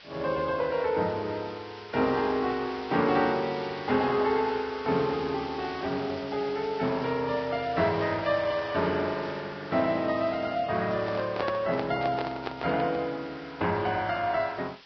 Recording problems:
codec artefacts; Vorbis, log-spectral distance 11 dB
hiss; SNR 18 dB
microphone handling noise; from 11 to 13 s; peak 0 dB vs average level

